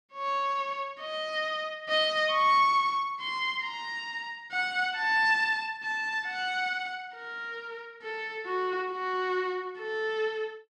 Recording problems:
none

